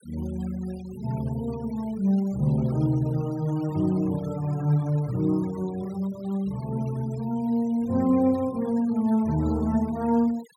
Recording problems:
denoising artefacts; signal-to-artefact ratio 23 dB

